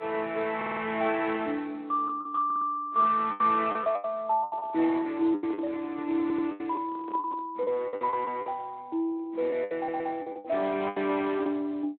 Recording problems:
phone line; 240 Hz to 3.7 kHz, Speex
lost packets; 10% of the sound replaced, filled with the last packet
stutter; 4 times, first at 0.5 s
handling noise; from 4.5 to 7.5 s; peak -10 dB vs average level

